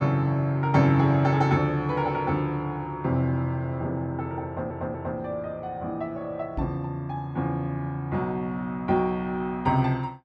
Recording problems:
audio stuttering; at 4.5 s
knock on the microphone; at 6.5 s; peak -2 dB vs average level

